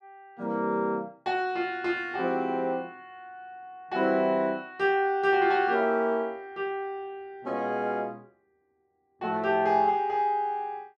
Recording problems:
none

